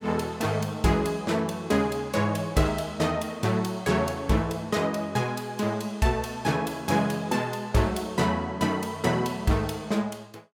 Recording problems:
none

